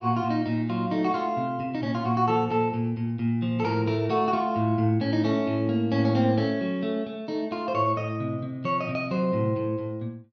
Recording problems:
none

